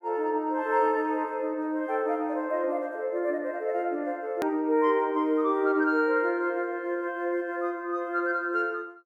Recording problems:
edit click; at 4.5 s

